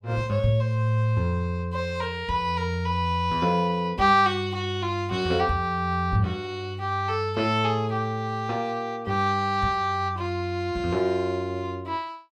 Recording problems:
none

